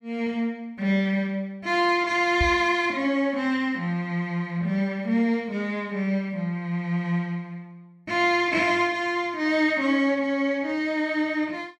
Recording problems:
knock on the microphone; at 2.5 s; peak +1 dB vs average level

